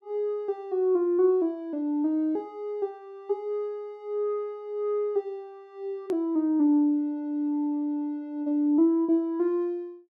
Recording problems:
edit click; at 6 s

